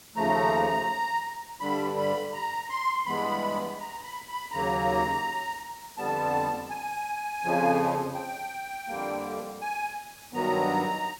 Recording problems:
hiss; slope -1 dB per octave, SNR 19 dB

